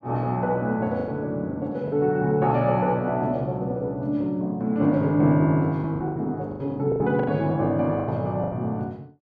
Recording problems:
lost packets; 8% of the sound replaced, filled with the last packet

